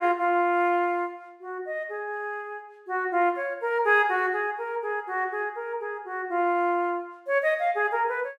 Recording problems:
none

